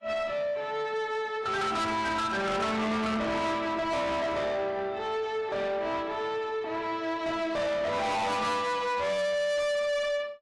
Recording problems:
lossy compression; AAC, log-spectral distance 2 dB, nothing above 11 kHz
distorted audio; soft clipping, signal-to-distortion ratio 6 dB

